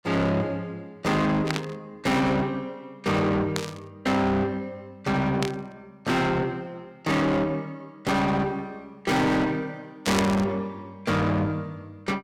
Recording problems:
distorted audio; soft clipping, signal-to-distortion ratio 6 dB
burst of static; 4 times, first at 1.5 s; peak +2 dB vs average level

